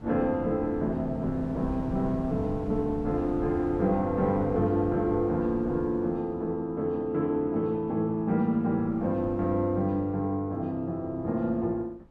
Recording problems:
wind noise; below 250 Hz, SNR 13 dB

